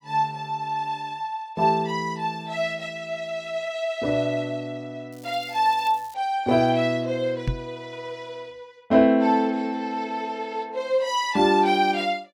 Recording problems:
crackle; from 5 to 6 s; loose cable, SNR 25 dB
microphone thump; at 7.5 s; peak +2 dB vs average level

